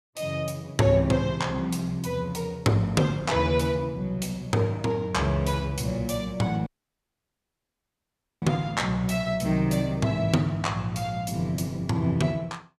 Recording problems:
dropout; at 6.5 s for 2 s

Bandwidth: 14.5 kHz